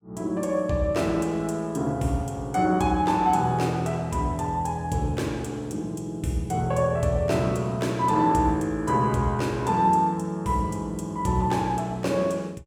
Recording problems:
none

